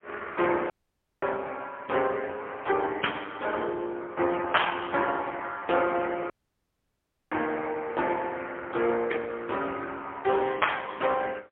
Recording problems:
phone line; 300 Hz to 3.3 kHz, AMR-NB, then MP3
audio cutting out; at 0.5 s for 0.5 s and at 6.5 s for 1 s

